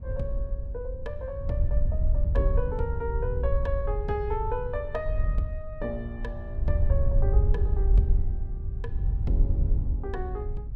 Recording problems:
wind on the microphone; below 72 Hz, SNR -6 dB

